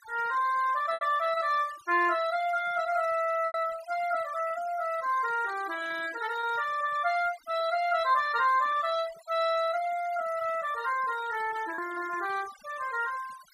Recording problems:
denoising artefacts; signal-to-artefact ratio 18 dB
packet loss; 2% of the sound replaced, filled with repeated pitch periods

